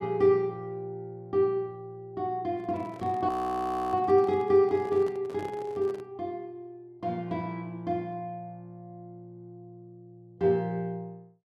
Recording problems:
microphone handling noise; from 2.5 to 6 s; peak -9 dB vs average level
audio freezing; at 3.5 s for 0.5 s

